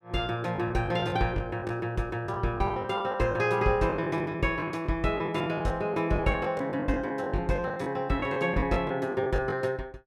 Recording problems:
lost packets; 13% of the sound replaced, filled with the last packet

